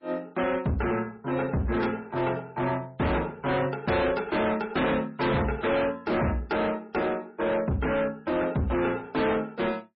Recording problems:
lossy compression; MP3, log-spectral distance 3 dB, nothing above 5.2 kHz
distorted audio; hard clipping, signal-to-distortion ratio 6 dB

